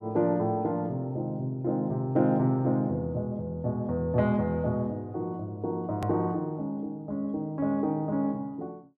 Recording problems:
click at an edit; at 6 s

